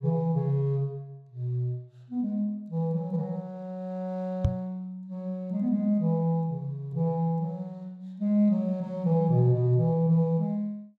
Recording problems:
microphone bump; at 4.5 s; peak +7 dB vs average level

